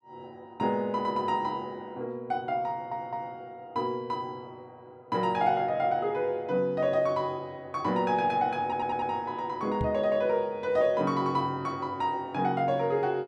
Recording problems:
audio stuttering; at 2.5 s and at 8.5 s
knock on the microphone; at 10 s; peak +1 dB vs average level

